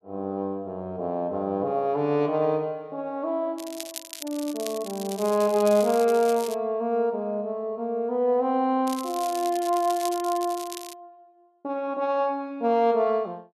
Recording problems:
crackle; from 3.5 to 6.5 s and from 9 to 11 s; loose cable, SNR 13 dB

